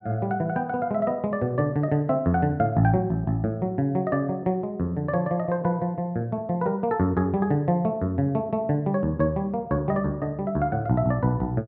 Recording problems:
none

